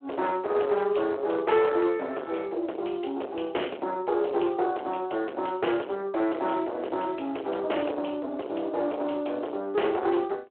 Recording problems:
phone line; 300 Hz to 3.2 kHz, Speex
distorted audio; soft clipping, signal-to-distortion ratio 9 dB

